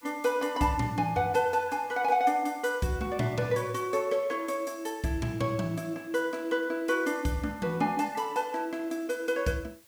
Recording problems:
background hiss; slope 0 dB per octave, SNR 27 dB

